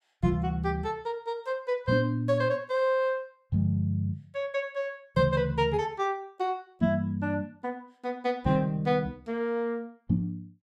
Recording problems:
none

